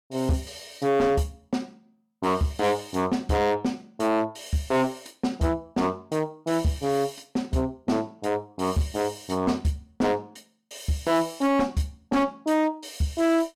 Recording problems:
distortion; hard clipping, signal-to-distortion ratio 8 dB

